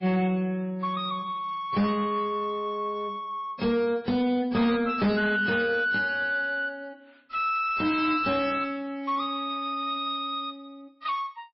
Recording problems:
lossy codec; MP3, then AAC, log-spectral distance 2 dB, nothing above 5.3 kHz
distortion; soft clipping, signal-to-distortion ratio 11 dB

